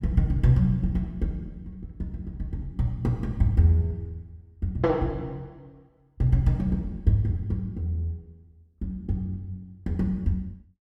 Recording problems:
none

